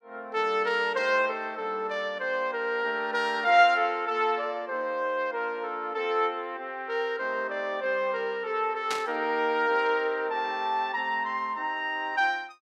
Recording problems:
burst of static; at 9 s; peak -1 dB vs average level

